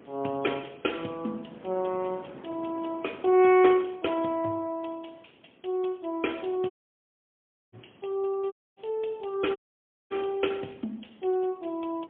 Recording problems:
phone line; 170 Hz to 3.3 kHz, AMR-NB, then MP3
wind noise; below 790 Hz, SNR 23 dB
dropout; at 6.5 s for 1 s, at 8.5 s and at 9.5 s for 0.5 s

